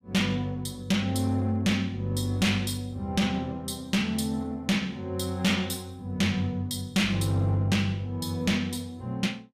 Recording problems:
distorted audio; hard clipping, signal-to-distortion ratio 7 dB

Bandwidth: 15 kHz